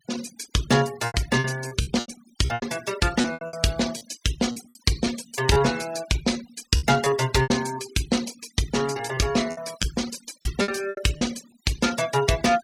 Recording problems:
denoising artefacts; signal-to-artefact ratio 15 dB
lost packets; 11% of the sound replaced, filled with repeated pitch periods

